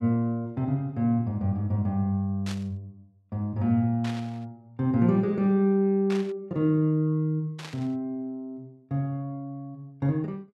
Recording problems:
burst of static; 4 times, first at 2.5 s; peak -8 dB vs average level

